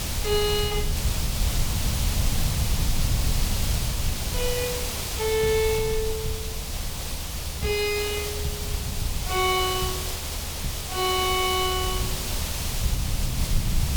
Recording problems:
background hiss; SNR 3 dB
rumble; below 100 Hz, SNR 4 dB

